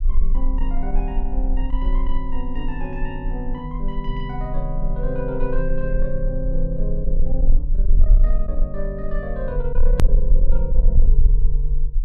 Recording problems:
distortion; soft clipping, signal-to-distortion ratio 10 dB
rumble; below 36 Hz, strongest tone 18 Hz, SNR -6 dB
edit click; at 10 s

